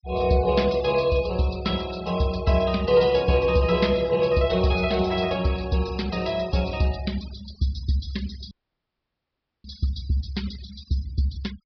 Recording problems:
treble missing; nothing above 5.5 kHz
noise reduction artefacts; signal-to-artefact ratio 18 dB
dropout; at 8.5 s for 1 s

